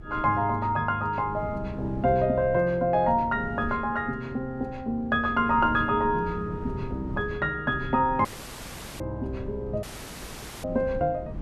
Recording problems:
wind noise; below 220 Hz, SNR 14 dB
audio cutting out; at 8.5 s for 1 s and at 10 s for 1 s

